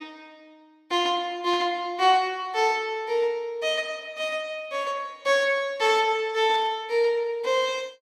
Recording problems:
static burst; at 1.5 s and at 6.5 s; peak -13 dB vs average level

